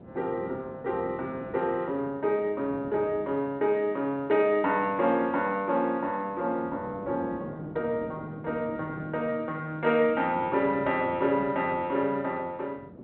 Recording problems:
telephone audio; 240 Hz to 3.4 kHz, G.726
wind noise; below 440 Hz, SNR 16 dB

